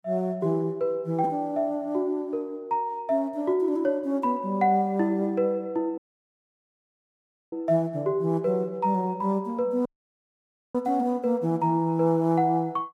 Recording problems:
dropout; at 6 s for 1.5 s and at 10 s for 1 s

